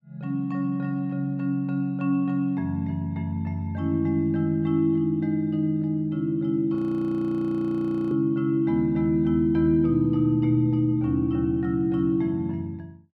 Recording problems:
frozen audio; at 7 s for 1.5 s

